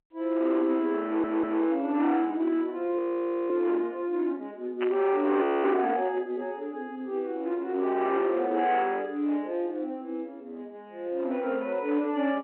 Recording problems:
phone line; 240 Hz to 3.1 kHz, G.711
distortion; hard clipping, uneven, signal-to-distortion ratio 11 dB
audio stuttering; at 1 s
audio freezing; at 3 s for 0.5 s and at 5.5 s
burst of static; at 5 s; peak -4 dB vs average level

